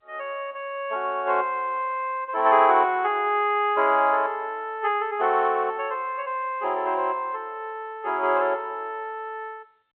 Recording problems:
telephone audio; 300 Hz to 3.6 kHz, G.711

